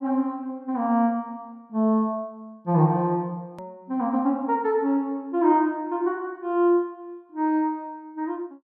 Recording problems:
click at an edit; at 3.5 s

